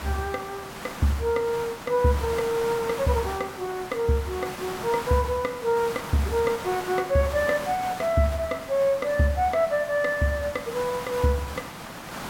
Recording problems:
background hiss; SNR 11 dB

